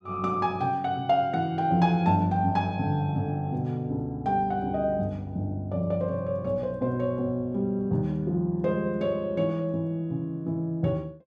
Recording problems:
none

